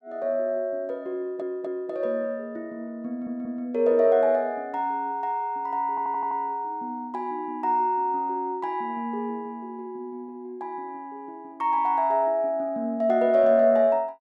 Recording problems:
audio stuttering; at 1 s, at 3 s and at 6 s

